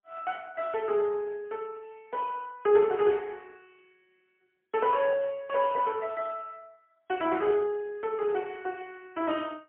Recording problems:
telephone audio; 110 Hz to 3.1 kHz, AMR-NB, then MP3

